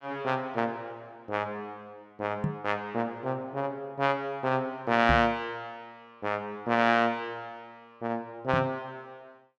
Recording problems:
microphone thump; at 2.5 s, at 5 s and at 8.5 s; peak +4 dB vs average level

